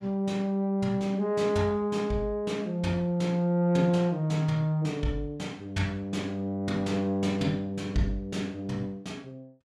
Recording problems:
none

